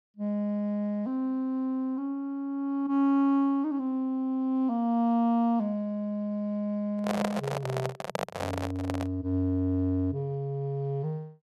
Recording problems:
microphone handling noise; from 7 to 9 s; peak +2 dB vs average level

